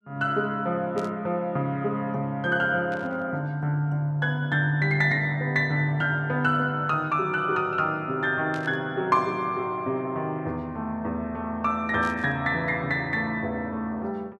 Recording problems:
static burst; 4 times, first at 1 s; peak -13 dB vs average level

